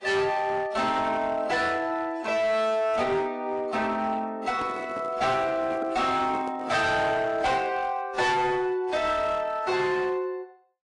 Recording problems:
codec artefacts; AAC, log-spectral distance 2 dB, nothing above 10.4 kHz
distortion; hard clipping, uneven, signal-to-distortion ratio 10 dB
microphone handling noise; from 4.5 to 7 s; peak -8 dB vs average level

